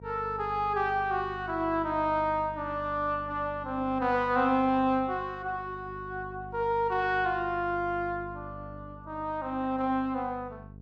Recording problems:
mains hum; 50 Hz, harmonics up to 500 Hz, SNR 17 dB

